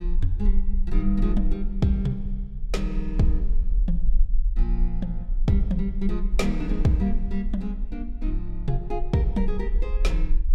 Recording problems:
low-frequency rumble; below 38 Hz, SNR 1 dB

